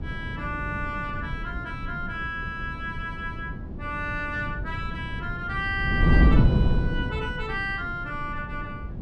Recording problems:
wind noise; below 170 Hz, SNR -2 dB

